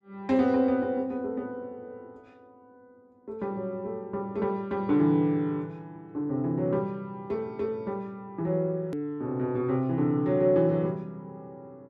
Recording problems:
edit click; at 9 s

